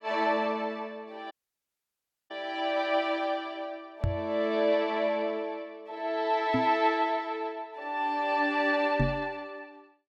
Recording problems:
audio cutting out; at 1.5 s for 1 s
knock on the microphone; at 4 s, at 6.5 s and at 9 s; peak +4 dB vs average level

